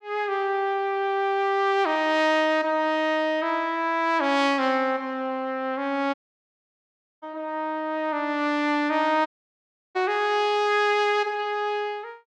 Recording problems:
dropout; at 6 s for 1 s and at 9.5 s for 0.5 s

